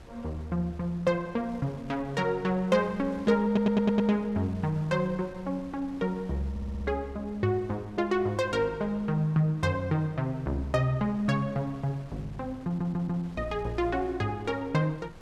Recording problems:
wind noise; below 600 Hz, SNR 21 dB
stutter; at 3.5 s, at 6.5 s and at 13 s

